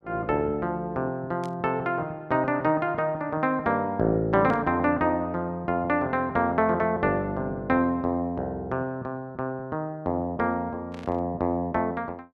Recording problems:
burst of static; at 1.5 s, at 4.5 s and at 11 s; peak -15 dB vs average level

